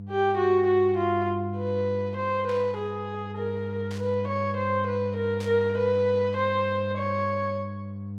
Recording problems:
mains hum; 50 Hz, harmonics up to 500 Hz, SNR 8 dB
burst of static; at 2.5 s, at 4 s and at 5.5 s; peak -12 dB vs average level

